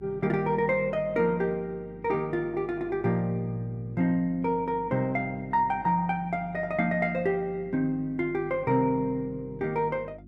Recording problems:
hum; 50 Hz, harmonics up to 350 Hz, SNR 21 dB

